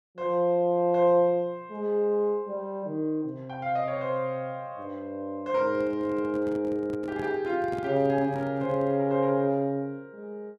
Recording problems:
microphone handling noise; from 5.5 to 9 s; peak -9 dB vs average level

